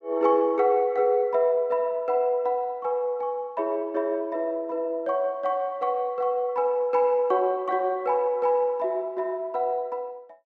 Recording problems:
none

